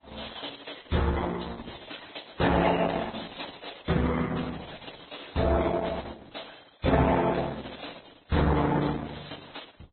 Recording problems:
codec artefacts; Opus, then Vorbis, log-spectral distance 10 dB, nothing above 4.1 kHz

